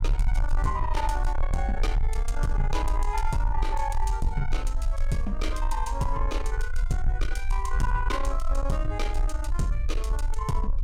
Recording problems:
distortion; soft clipping, signal-to-distortion ratio 11 dB
low-frequency rumble; below 46 Hz, strongest tone 24 Hz, SNR -1 dB

